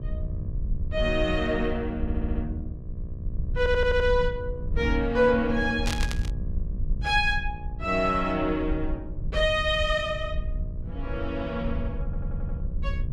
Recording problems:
mains hum; 60 Hz, harmonics up to 1.3 kHz, SNR 21 dB
low-frequency rumble; below 80 Hz, SNR 6 dB
stutter; at 2 s, at 3.5 s and at 12 s
burst of static; at 6 s; peak -1 dB vs average level

